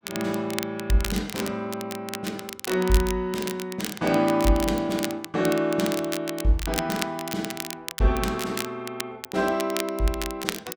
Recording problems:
crackling; vinyl, SNR 8 dB

